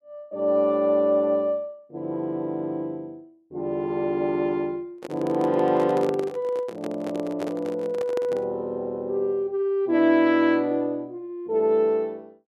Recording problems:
handling noise; from 5 to 8.5 s; peak -3 dB vs average level

